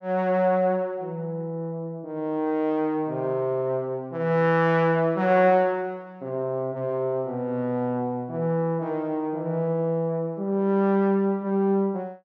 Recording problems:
none

